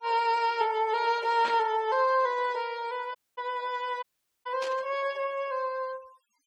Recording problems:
denoising artefacts; signal-to-artefact ratio 20 dB
burst of static; at 1.5 s and at 4.5 s; peak -6 dB vs average level
dropout; at 3 s and at 4 s

